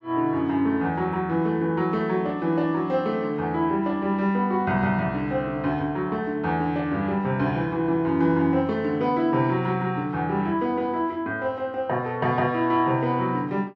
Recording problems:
none

